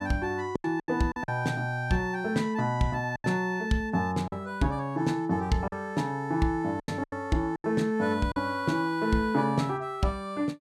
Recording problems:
lost packets; 6% of the sound replaced, filled with silence

